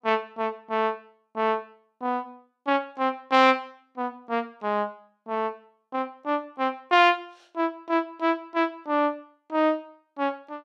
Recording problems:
none

